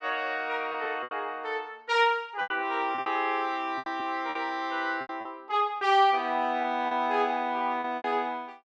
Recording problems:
lost packets; 9% of the sound replaced, filled with repeated pitch periods

